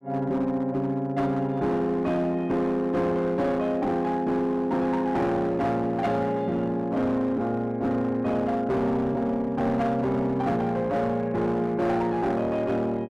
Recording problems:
distorted audio; hard clipping, uneven, signal-to-distortion ratio 11 dB

